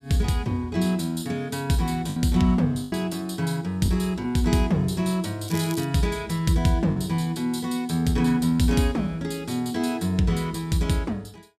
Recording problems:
lost packets; 1.9% of the sound replaced, filled with the last packet
crackling; at 5.5 s; loose cable, SNR 15 dB

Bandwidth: 14.5 kHz